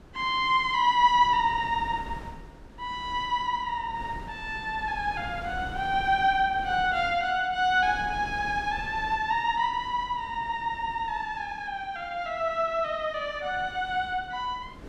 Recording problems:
wind on the microphone; below 410 Hz, SNR 18 dB

